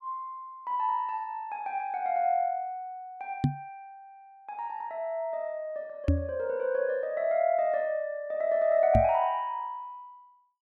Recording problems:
microphone bump; at 3.5 s, at 6 s and at 9 s; peak +8 dB vs average level

